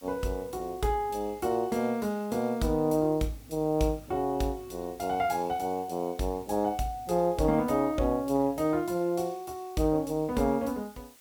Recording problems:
hiss; slope 0 dB per octave, SNR 25 dB

